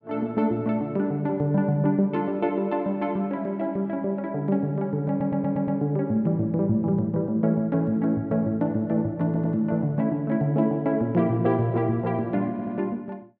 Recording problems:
audio stuttering; at 5 s, at 9.5 s and at 13 s

